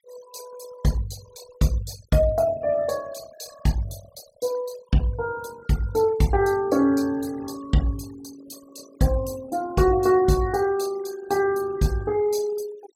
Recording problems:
noise reduction artefacts; signal-to-artefact ratio 20 dB

